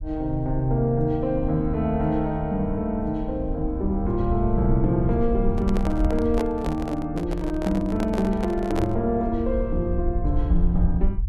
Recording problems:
low-frequency rumble; below 64 Hz, SNR 6 dB
handling noise; from 5.5 to 9 s; peak -1 dB vs average level

